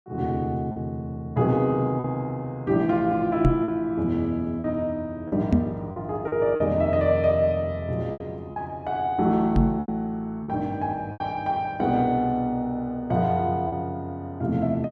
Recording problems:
packet loss; 5% of the sound replaced, filled with repeated pitch periods
microphone thump; at 3.5 s, at 5.5 s and at 9.5 s; peak +9 dB vs average level

